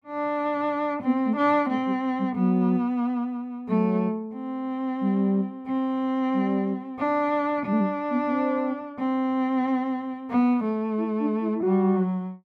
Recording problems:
none

